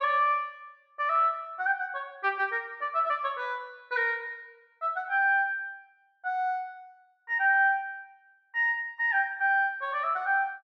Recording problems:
none

